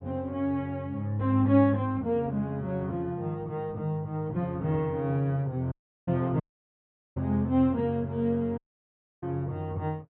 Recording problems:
treble missing; nothing above 4 kHz
dropout; at 5.5 s, at 6.5 s for 1 s and at 8.5 s for 0.5 s

